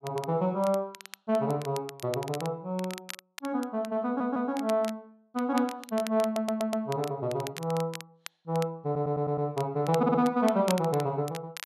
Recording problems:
crackling; vinyl, SNR 15 dB
audio stuttering; 4 times, first at 4 s

